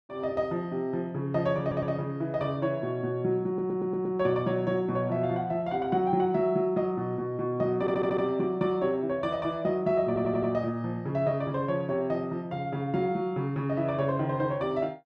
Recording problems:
audio stuttering; 4 times, first at 1.5 s

